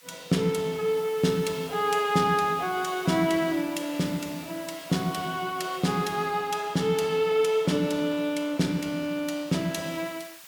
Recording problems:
background hiss; SNR 20 dB

